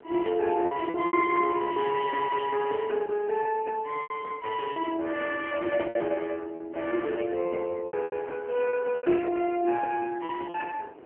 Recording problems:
phone line; 240 Hz to 2.5 kHz, AMR-NB
wind on the microphone; below 690 Hz, SNR 24 dB
packet loss; 8% of the sound replaced, filled with repeated pitch periods

